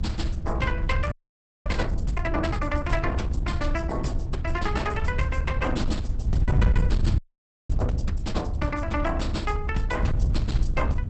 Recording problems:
lossy compression; Opus, log-spectral distance 2 dB, nothing above 8 kHz
distorted audio; hard clipping, uneven, signal-to-distortion ratio 11 dB
rumble; below 74 Hz, SNR 3 dB
wind noise; below 100 Hz, SNR -1 dB
frozen audio; at 1 s for 0.5 s and at 7 s for 0.5 s

